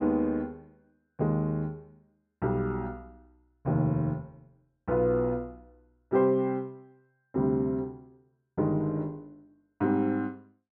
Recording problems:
none

